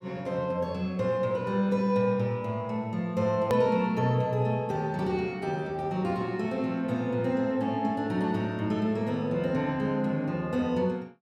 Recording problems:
click at an edit; at 3.5 s

